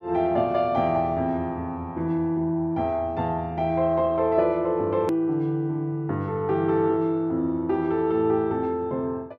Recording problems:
edit click; at 5 s

